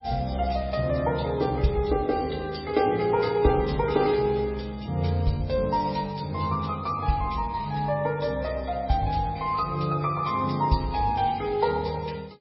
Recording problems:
lossy compression; MP3, log-spectral distance 6 dB, nothing above 5 kHz

